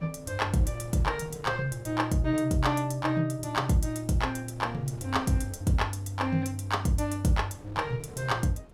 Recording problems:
wind on the microphone; below 410 Hz, SNR 21 dB

